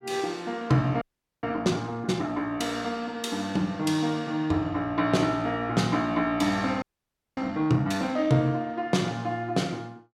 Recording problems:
audio freezing; at 1 s and at 7 s for 0.5 s

